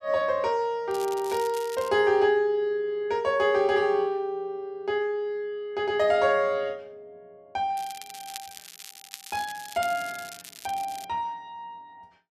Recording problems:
crackling; at 1 s and from 8 to 11 s; loose cable, SNR 16 dB

